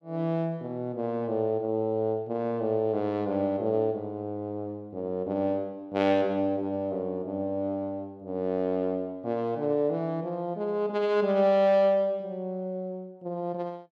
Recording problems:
none

